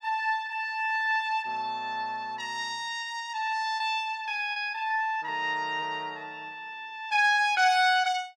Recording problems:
packet loss; 1.7% of the sound replaced, filled with repeated pitch periods

